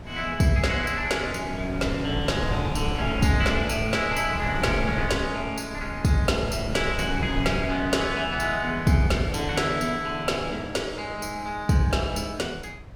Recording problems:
wind noise; below 250 Hz, SNR 8 dB

